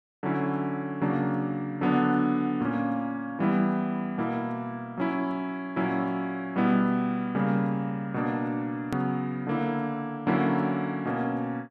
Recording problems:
edit click; at 9 s

